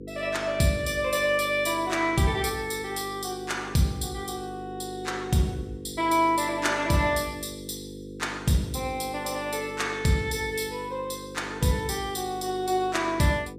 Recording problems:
hum; 50 Hz, harmonics up to 500 Hz, SNR 13 dB

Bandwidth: 15 kHz